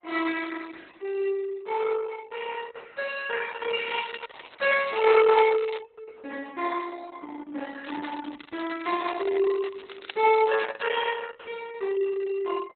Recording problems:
lossy compression; Opus, log-spectral distance 6 dB, nothing above 3.9 kHz
crackle; from 4 to 6 s and from 8 to 11 s; loose cable, SNR 20 dB

